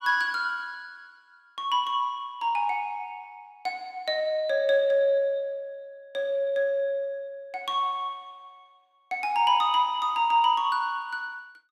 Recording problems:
none

